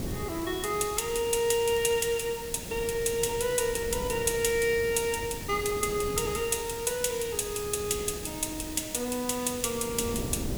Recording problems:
hiss; SNR 12 dB
wind on the microphone; below 350 Hz, SNR 13 dB
crackling; vinyl, SNR 28 dB

